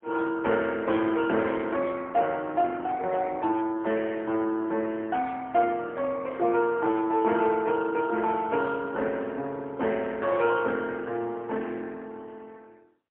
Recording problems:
telephone audio; 170 Hz to 3.6 kHz, AMR-NB, then MP3

